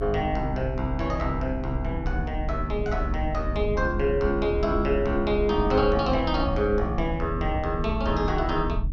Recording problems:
electrical hum; 50 Hz, harmonics up to 300 Hz, SNR 13 dB
rumble; below 70 Hz, SNR 6 dB

